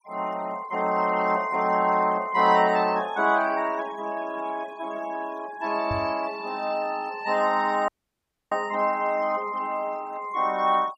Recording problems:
denoising artefacts; signal-to-artefact ratio 20 dB
knock on the microphone; at 6 s; peak -4 dB vs average level
dropout; at 8 s for 0.5 s

